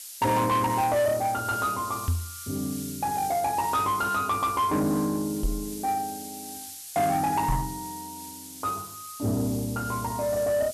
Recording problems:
distorted audio; soft clipping, signal-to-distortion ratio 12 dB
hiss; slope +6 dB per octave, SNR 12 dB
knock on the microphone; at 2 s, at 5.5 s and at 7.5 s; peak +4 dB vs average level

